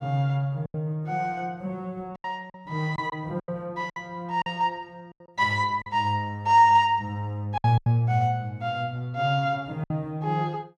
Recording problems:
lost packets; 7% of the sound replaced, filled with silence

